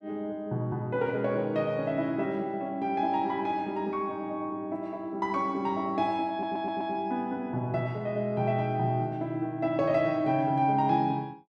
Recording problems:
stutter; at 6.5 s

